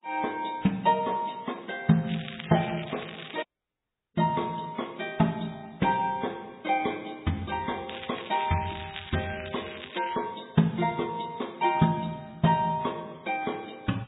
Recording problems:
treble cut off; nothing above 3.8 kHz
lossy codec; MP3, log-spectral distance 9 dB
crackle; from 2 to 3.5 s and from 8 to 10 s; loose cable, SNR 12 dB
audio cutting out; at 3.5 s for 0.5 s

